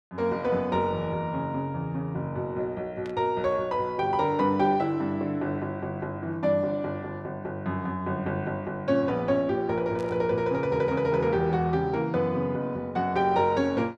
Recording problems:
burst of static; at 3 s and at 10 s; peak -14 dB vs average level

